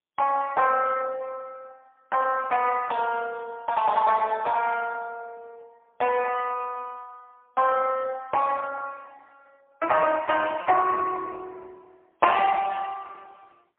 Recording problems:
phone line; 320 Hz to 2.8 kHz, AMR-NB, then MP3

